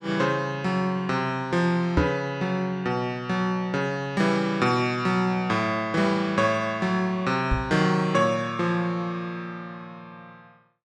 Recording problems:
microphone thump; at 2 s and at 7.5 s; peak +5 dB vs average level

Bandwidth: 12 kHz